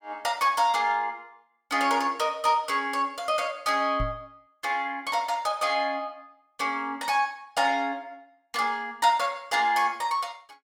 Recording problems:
knock on the microphone; at 4 s; peak -2 dB vs average level

